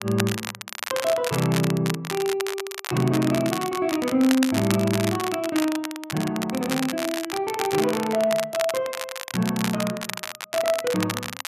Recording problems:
crackle; vinyl, SNR 7 dB

